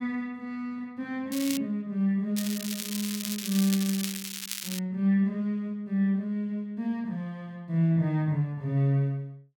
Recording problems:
crackling; at 1.5 s and from 2.5 to 5 s; loose cable, SNR 6 dB

